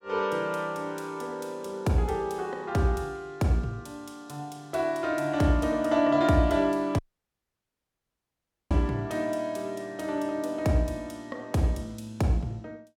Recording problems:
dropout; at 7 s for 1.5 s

